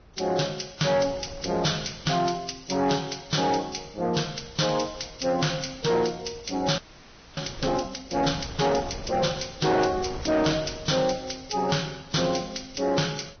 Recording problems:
low-pass filter; nothing above 6.2 kHz
lossy codec; Vorbis, log-spectral distance 7 dB
distortion; soft clipping, signal-to-distortion ratio 11 dB
wind noise; below 580 Hz, SNR 18 dB
audio freezing; at 7 s for 0.5 s

